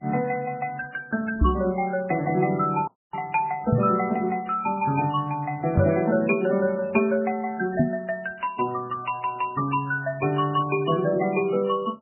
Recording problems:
lossy compression; MP3, log-spectral distance 3 dB, nothing above 2.4 kHz
microphone bump; 4 times, first at 1.5 s; peak +7 dB vs average level
audio cutting out; at 3 s

